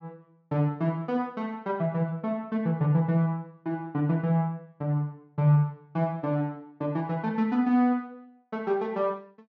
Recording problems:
treble missing; nothing above 8 kHz

